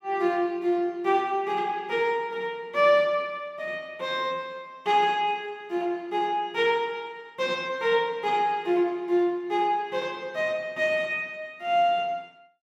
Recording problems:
none

